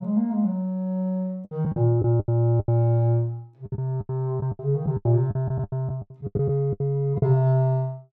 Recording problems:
lost packets; 14% of the sound replaced, filled with the last packet

